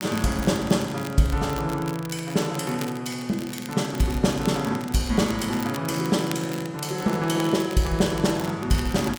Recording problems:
crackle; vinyl, SNR 16 dB

